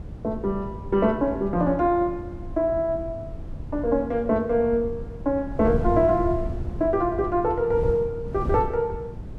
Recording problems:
wind noise; below 150 Hz, SNR 10 dB

